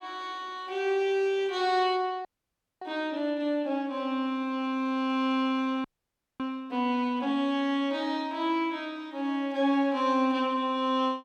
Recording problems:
frozen audio; at 2.5 s for 0.5 s and at 6 s for 0.5 s

